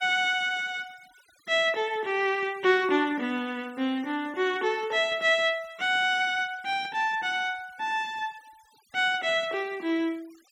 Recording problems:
noise reduction artefacts; signal-to-artefact ratio 26 dB

